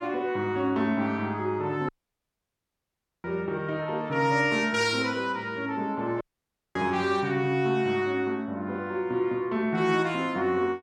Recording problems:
dropout; at 2 s for 1.5 s and at 6 s for 0.5 s

